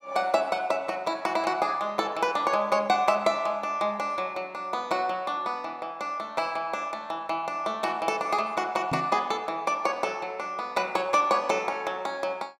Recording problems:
microphone bump; at 9 s; peak -2 dB vs average level

